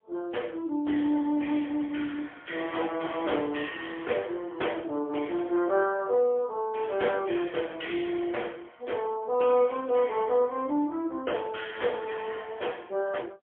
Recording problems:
phone line; 260 Hz to 3.4 kHz, AMR-NB, then MP3

